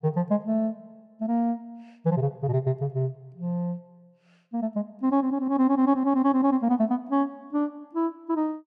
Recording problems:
none

